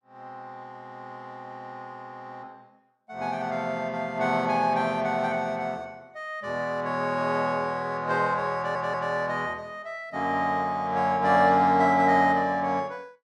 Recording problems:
stutter; at 8.5 s

